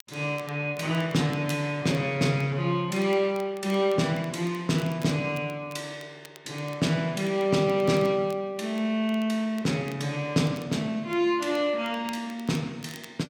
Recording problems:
crackle; vinyl, SNR 25 dB

